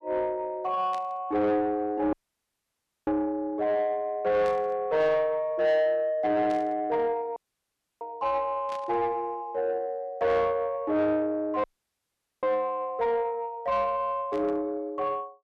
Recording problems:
distorted audio; soft clipping, signal-to-distortion ratio 12 dB
burst of static; 5 times, first at 1 s; peak -13 dB vs average level
audio cutting out; at 2 s for 1 s, at 7.5 s for 0.5 s and at 12 s for 1 s

